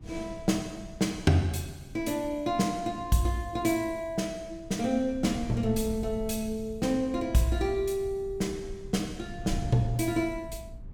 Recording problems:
wind noise; below 110 Hz, SNR 14 dB

